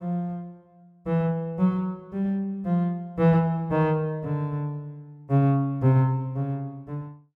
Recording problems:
none

